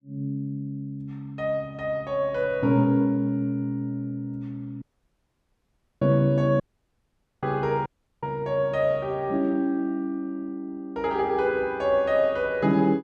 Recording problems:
dropout; at 5 s for 1 s, at 6.5 s for 1 s and at 8 s

